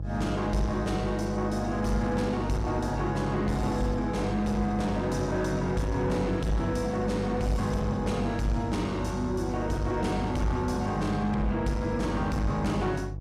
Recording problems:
distorted audio; soft clipping, signal-to-distortion ratio 11 dB
electrical hum; 50 Hz, harmonics up to 500 Hz, SNR 8 dB

